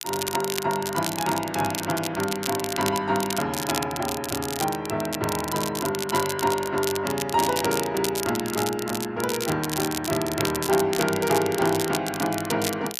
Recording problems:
crackle; vinyl, SNR 6 dB

